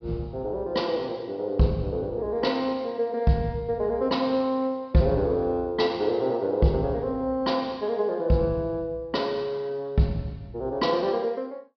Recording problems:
low-pass filter; nothing above 5.5 kHz

